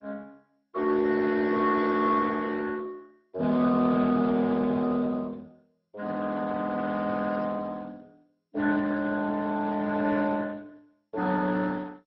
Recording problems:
codec artefacts; Speex, then MP2, log-spectral distance 3 dB, nothing above 5.5 kHz

